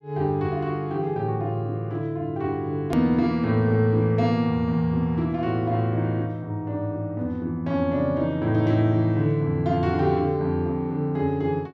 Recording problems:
edit click; at 3 s

